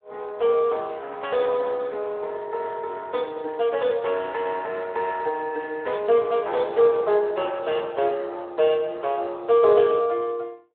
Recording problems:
telephone audio; 320 Hz to 3.9 kHz, Speex

